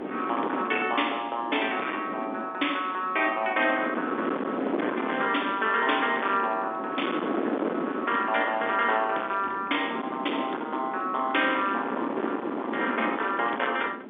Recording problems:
telephone audio; 240 Hz to 3.6 kHz, G.711
distorted audio; hard clipping, signal-to-distortion ratio 9 dB
wind noise; below 760 Hz, SNR 6 dB

